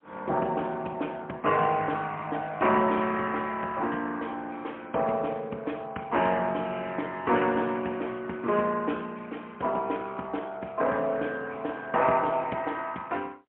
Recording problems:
telephone audio; 260 Hz to 3.3 kHz, AMR-NB, then MP3

